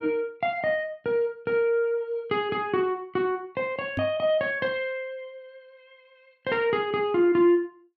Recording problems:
microphone bump; at 4 s; peak -1 dB vs average level

